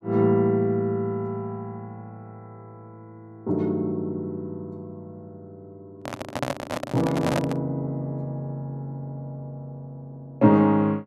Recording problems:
microphone handling noise; from 6 to 7.5 s; peak +2 dB vs average level

